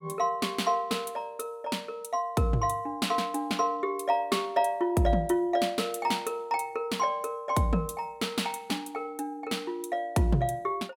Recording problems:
none

